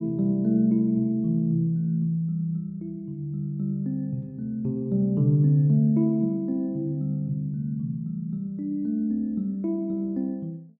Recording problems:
none

